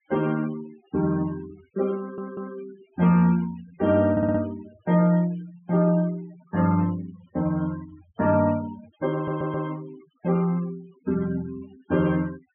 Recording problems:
treble cut off; nothing above 3.3 kHz
denoising artefacts; signal-to-artefact ratio 21 dB
audio stuttering; at 2 s, at 4 s and at 9 s

